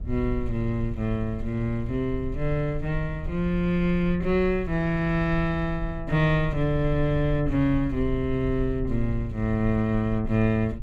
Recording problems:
low-frequency rumble; below 66 Hz, SNR 10 dB

